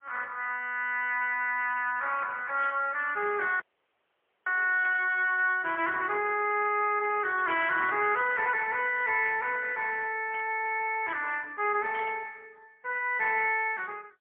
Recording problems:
telephone audio; 320 Hz to 3.3 kHz, AMR-NB, then MP3
static burst; 5 times, first at 2.5 s; peak -9 dB vs average level
dropout; at 3.5 s for 1 s

